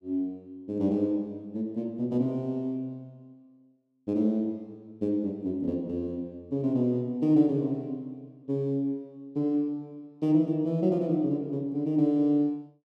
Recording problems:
none

